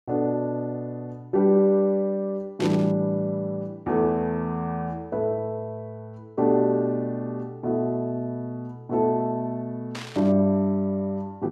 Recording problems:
static burst; at 2.5 s and at 10 s; peak -6 dB vs average level

